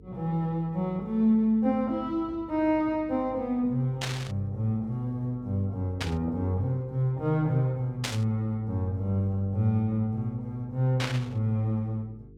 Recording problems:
electrical hum; 50 Hz, harmonics up to 450 Hz, SNR 22 dB
static burst; 4 times, first at 4 s; peak +2 dB vs average level

